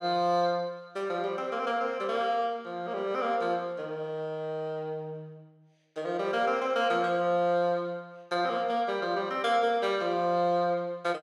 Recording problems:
none

